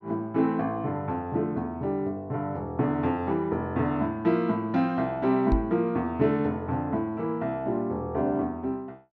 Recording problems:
treble missing; nothing above 8 kHz
microphone bump; at 5.5 s; peak +4 dB vs average level

